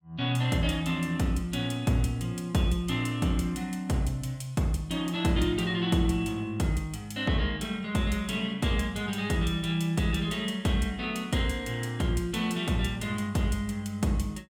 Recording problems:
none

